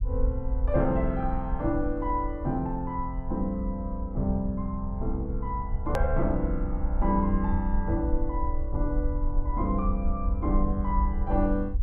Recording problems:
low-frequency rumble; below 60 Hz, SNR 2 dB
hard cut with a click; at 6 s

